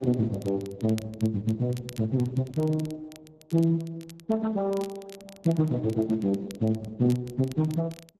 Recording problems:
lossy codec; Speex, then Opus, log-spectral distance 2 dB
crackle; vinyl, SNR 22 dB

